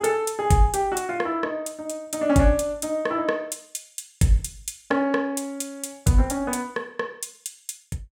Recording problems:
none

